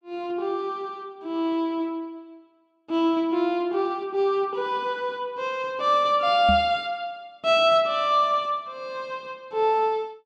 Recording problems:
microphone thump; at 6.5 s; peak +1 dB vs average level

